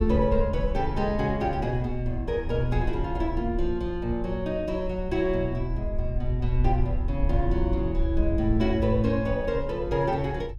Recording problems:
rumble; below 68 Hz, SNR 5 dB

